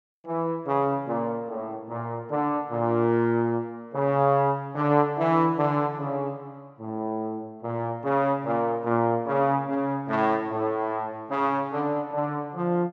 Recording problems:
none

